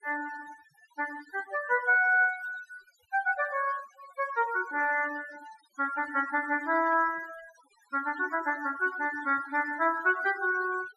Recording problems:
noise reduction artefacts; signal-to-artefact ratio 17 dB

